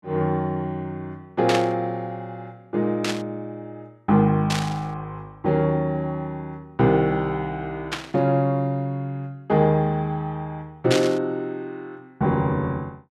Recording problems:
burst of static; 5 times, first at 1.5 s; peak +3 dB vs average level

